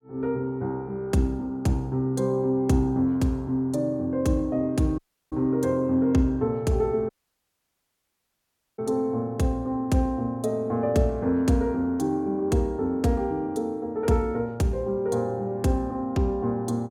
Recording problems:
audio cutting out; at 5 s and at 7 s for 1.5 s

